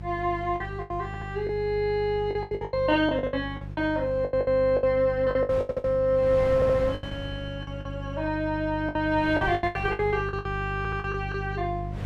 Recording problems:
mains hum; 50 Hz, harmonics up to 500 Hz, SNR 10 dB
wind noise; below 560 Hz, SNR 18 dB
lost packets; 15% of the sound replaced, filled with the last packet
stutter; 4 times, first at 1 s

